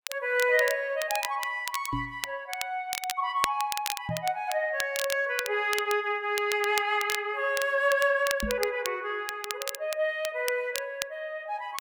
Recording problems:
crackling; vinyl, SNR 8 dB
microphone thump; at 2 s, at 4 s and at 8.5 s; peak -1 dB vs average level

